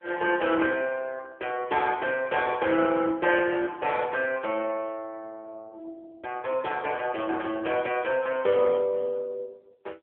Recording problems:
phone line; 280 Hz to 3.4 kHz, AMR-NB

